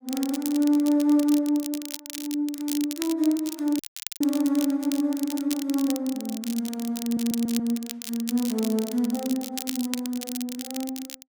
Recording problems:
crackling; vinyl, SNR 10 dB
dropout; at 4 s
audio stuttering; at 7 s

